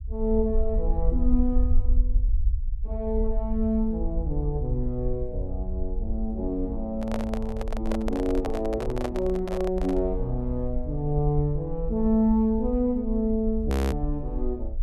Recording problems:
low-frequency rumble; below 56 Hz, SNR 4 dB
handling noise; from 7 to 10 s; peak 0 dB vs average level
audio freezing; at 14 s

